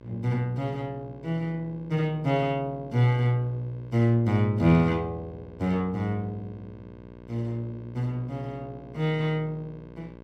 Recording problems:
hum; 60 Hz, harmonics up to 2.2 kHz, SNR 19 dB

